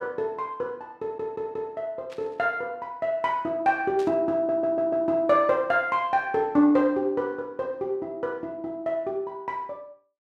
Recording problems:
audio stuttering; at 1 s and at 4.5 s
static burst; at 2 s and at 4 s; peak -14 dB vs average level

